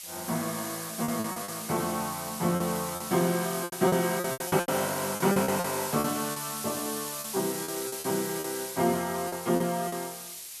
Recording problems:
hiss; slope +4 dB per octave, SNR 6 dB
lost packets; 11% of the sound replaced, filled with repeated pitch periods

